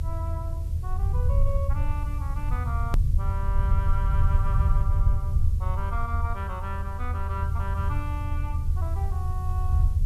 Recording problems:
hum; 60 Hz, harmonics up to 540 Hz, SNR 19 dB
background hiss; slope 0 dB per octave, SNR 20 dB
rumble; below 82 Hz, SNR -10 dB
hard cut with a click; at 3 s

